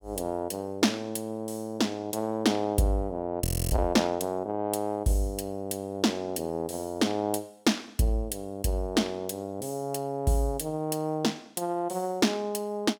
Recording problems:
audio freezing; at 3.5 s

